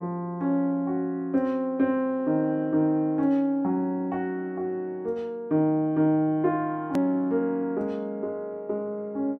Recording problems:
click at an edit; at 7 s

